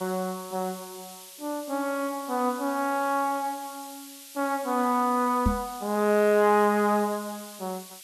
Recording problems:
hiss; slope +6 dB per octave, SNR 16 dB
knock on the microphone; at 5.5 s; peak +5 dB vs average level

